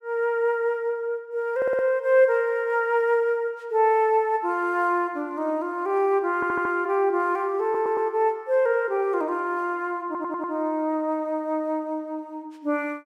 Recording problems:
stutter; 4 times, first at 1.5 s

